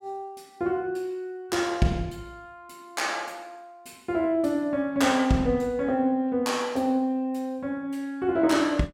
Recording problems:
none

